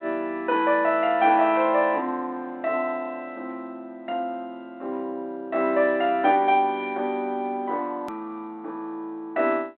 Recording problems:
telephone audio; 240 Hz to 3.3 kHz, G.726
hard cut with a click; at 8 s

